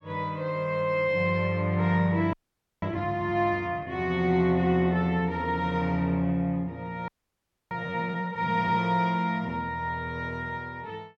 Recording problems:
frozen audio; at 2.5 s and at 7 s for 0.5 s

